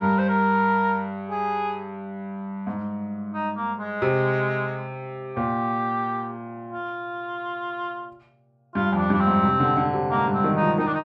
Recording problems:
none

